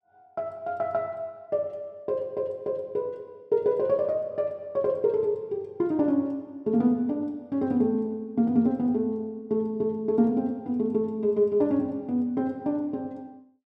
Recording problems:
none

